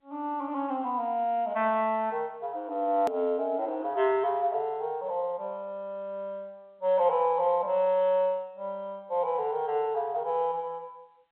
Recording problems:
phone line; 280 Hz to 3.5 kHz, G.711
click at an edit; at 3 s

